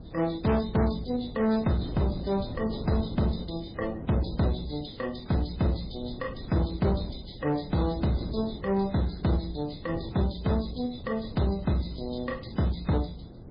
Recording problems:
lossy compression; MP3, then MP3, log-spectral distance 6 dB, nothing above 4.8 kHz
distorted audio; soft clipping, signal-to-distortion ratio 12 dB
wind on the microphone; below 300 Hz, SNR 12 dB

